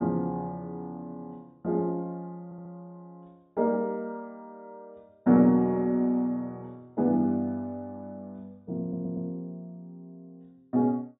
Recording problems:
low-pass filter; nothing above 4 kHz
stutter; at 2.5 s and at 9 s

